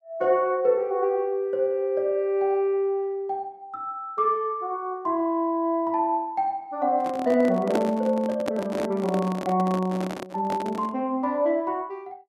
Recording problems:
handling noise; from 7 to 11 s; peak +2 dB vs average level

